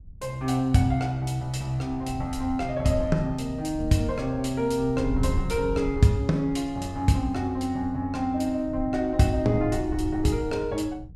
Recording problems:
wind on the microphone; below 94 Hz, SNR 11 dB

